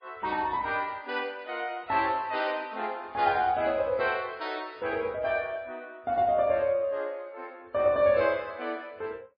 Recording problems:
lossy compression; MP3, log-spectral distance 2 dB, nothing above 5 kHz

